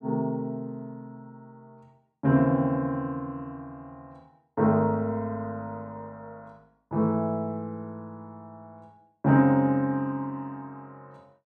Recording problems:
none

